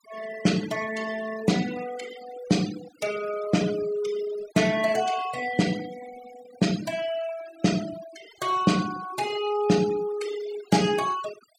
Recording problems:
denoising artefacts; signal-to-artefact ratio 14 dB

